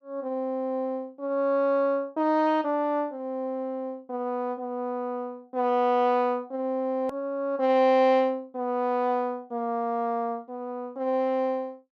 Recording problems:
edit click; at 7 s

